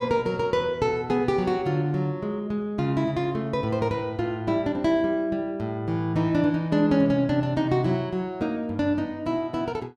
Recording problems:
none

